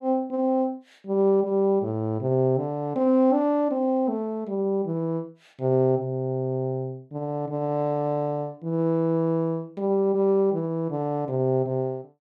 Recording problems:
none

